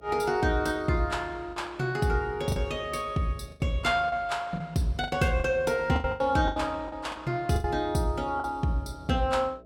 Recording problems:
hum; 60 Hz, harmonics up to 660 Hz, SNR 25 dB
lost packets; 8% of the sound replaced, filled with the last packet

